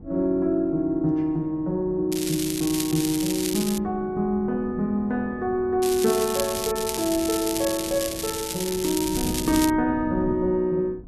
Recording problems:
wind on the microphone; below 240 Hz, SNR 16 dB
crackle; from 2 to 4 s, at 6 s and from 7 to 9.5 s; loose cable, SNR 6 dB

